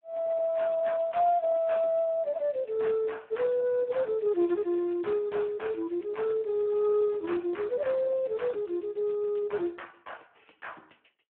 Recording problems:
phone line; 190 Hz to 3.1 kHz, Speex

